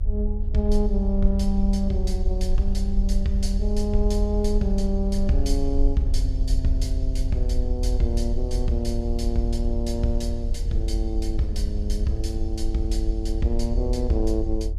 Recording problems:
rumble; below 48 Hz, strongest tone 24 Hz, SNR -1 dB
wind noise; below 250 Hz, SNR 15 dB

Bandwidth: 14.5 kHz